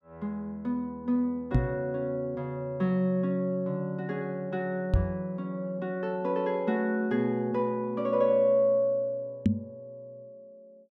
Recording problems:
microphone thump; at 1.5 s, at 5 s and at 9.5 s; peak +9 dB vs average level

